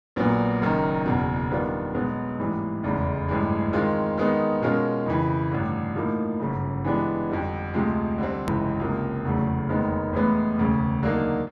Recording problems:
edit click; at 8.5 s

